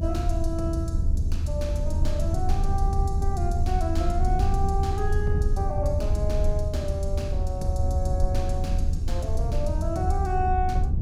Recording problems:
low-frequency rumble; below 80 Hz, SNR -4 dB

